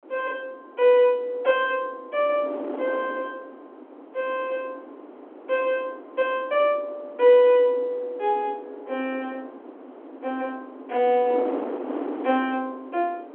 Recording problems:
telephone audio; 240 Hz to 3.4 kHz, G.711
wind noise; below 640 Hz, SNR 14 dB

